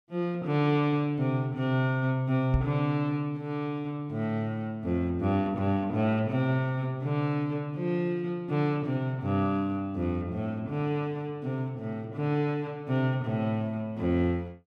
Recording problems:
microphone bump; at 2.5 s; peak +4 dB vs average level

